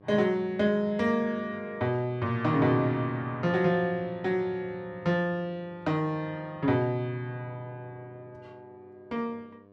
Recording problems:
electrical hum; 50 Hz, harmonics up to 1.3 kHz, SNR 27 dB

